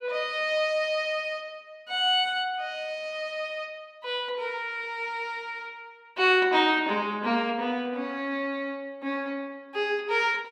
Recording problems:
none

